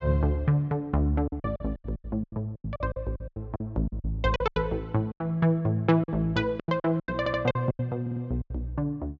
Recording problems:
treble cut off; nothing above 7.4 kHz
lost packets; 16% of the sound replaced, filled with silence
stutter; at 7 s and at 8 s

